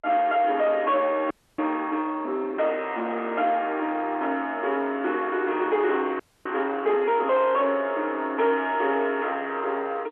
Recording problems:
phone line; 240 Hz to 3.4 kHz, G.711
distortion; soft clipping, signal-to-distortion ratio 10 dB
frozen audio; at 1.5 s and at 6 s

